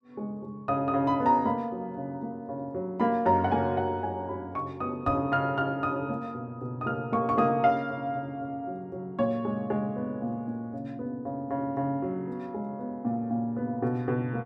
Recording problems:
microphone bump; at 5 s; peak -2 dB vs average level

